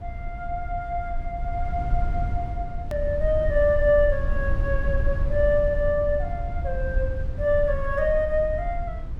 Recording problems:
low-frequency rumble; below 70 Hz, SNR 4 dB
click at an edit; at 3 s

